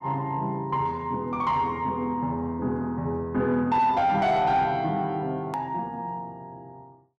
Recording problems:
distorted audio; soft clipping, signal-to-distortion ratio 10 dB
hard cut with a click; at 5.5 s

